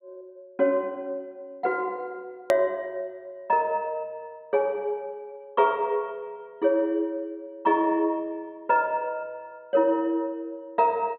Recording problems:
treble missing; nothing above 4.3 kHz
click at an edit; at 2.5 s

